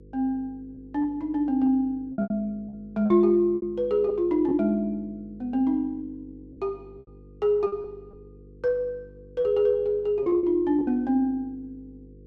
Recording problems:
hum; 50 Hz, harmonics up to 500 Hz, SNR 24 dB
packet loss; 6% of the sound replaced, filled with repeated pitch periods

